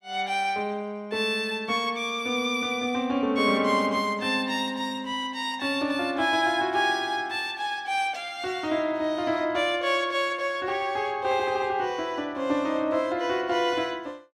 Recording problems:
none

